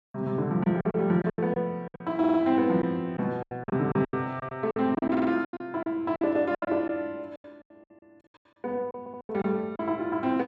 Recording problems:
lost packets; 15% of the sound replaced, filled with silence
stutter; at 2 s, at 5 s and at 9 s

